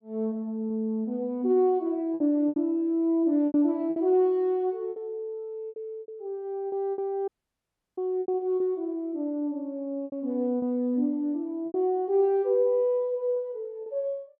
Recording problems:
lost packets; 7% of the sound replaced, filled with repeated pitch periods
audio cutting out; at 7.5 s for 0.5 s

